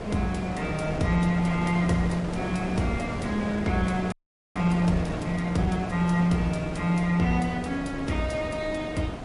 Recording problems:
codec artefacts; MP3, log-spectral distance 2 dB, nothing above 11 kHz
wind noise; below 700 Hz, SNR 7 dB
frozen audio; at 4 s

